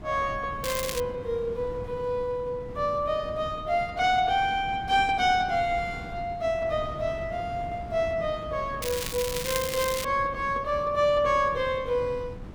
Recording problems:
wind noise; below 260 Hz, SNR 14 dB
crackle; at 0.5 s and from 9 to 10 s; loose cable, SNR 6 dB

